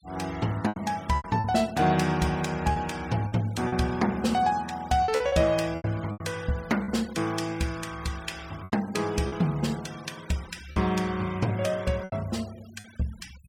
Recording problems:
noise reduction artefacts; signal-to-artefact ratio 20 dB
lost packets; 7% of the sound replaced, filled with repeated pitch periods

